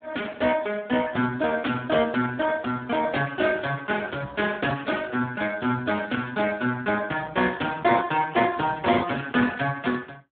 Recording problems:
telephone audio; 86 Hz to 2.1 kHz, Speex

